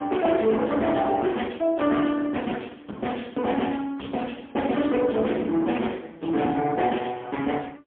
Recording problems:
phone line; 190 Hz to 3.3 kHz, AMR-NB, then MP3
distortion; hard clipping, signal-to-distortion ratio 13 dB

